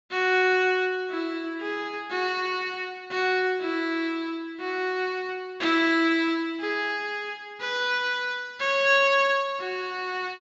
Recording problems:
treble cut off; nothing above 8 kHz

